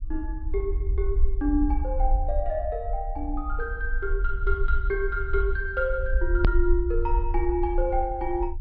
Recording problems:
treble cut off; nothing above 5.5 kHz
low-frequency rumble; below 54 Hz, SNR 0 dB
edit click; at 6.5 s

